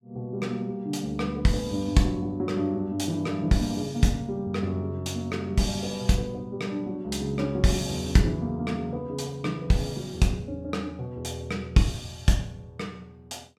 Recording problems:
none

